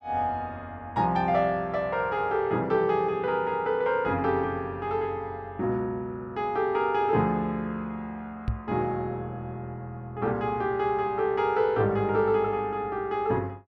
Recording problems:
microphone bump; at 8.5 s; peak +2 dB vs average level

